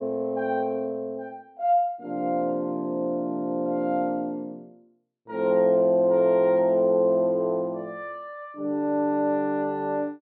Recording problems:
treble cut off; nothing above 4.5 kHz

